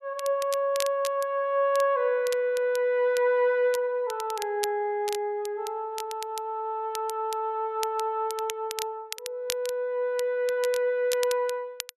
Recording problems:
crackling; vinyl, SNR 13 dB

